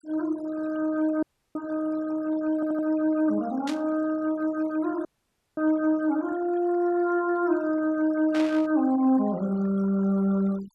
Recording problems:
denoising artefacts; signal-to-artefact ratio 21 dB
dropout; at 1 s and at 5 s for 0.5 s
audio stuttering; at 2.5 s
static burst; at 3.5 s and at 8.5 s; peak -7 dB vs average level

